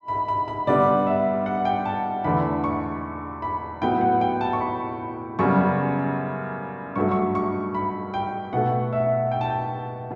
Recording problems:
none

